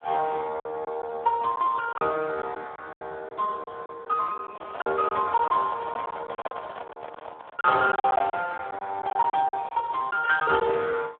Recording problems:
phone line; 320 Hz to 2.1 kHz, Speex
packet loss; 10% of the sound replaced, filled with silence
handling noise; from 4.5 to 7.5 s; peak -3 dB vs average level

